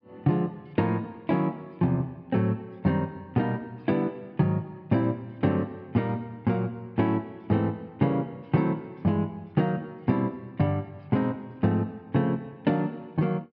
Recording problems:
treble cut off; nothing above 5.5 kHz

